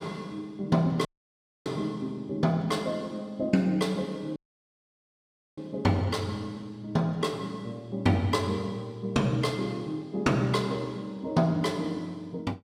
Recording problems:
audio cutting out; at 1 s for 0.5 s and at 4.5 s for 1 s

